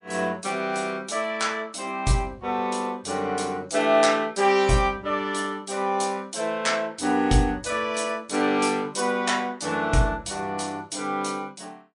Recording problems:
lossy codec; MP3, log-spectral distance 4 dB

